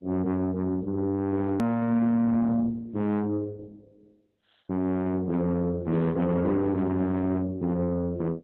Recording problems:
codec artefacts; MP3, then Opus, log-spectral distance 2 dB, nothing above 13.1 kHz
distorted audio; soft clipping, signal-to-distortion ratio 7 dB
edit click; at 1.5 s

